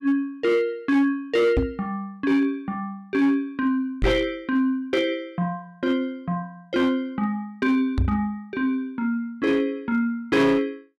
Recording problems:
distortion; hard clipping, signal-to-distortion ratio 12 dB
knock on the microphone; at 1.5 s, at 4 s and at 8 s; peak +5 dB vs average level

